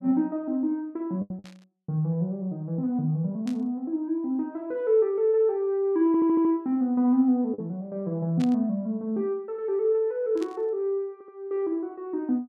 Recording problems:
lost packets; 1.5% of the sound replaced, filled with the last packet
static burst; 4 times, first at 1.5 s; peak -13 dB vs average level
stutter; at 6 s and at 11 s

